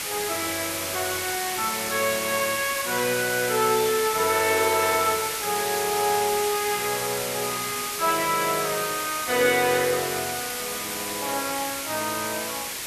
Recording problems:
hiss; slope 0 dB per octave, SNR 3 dB

